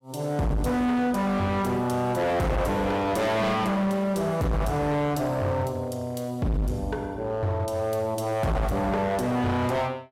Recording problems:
distortion; hard clipping, uneven, signal-to-distortion ratio 6 dB

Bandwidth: 16 kHz